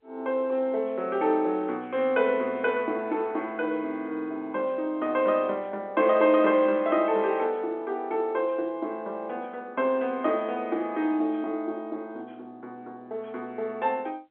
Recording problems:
phone line; 260 Hz to 3.5 kHz, G.711

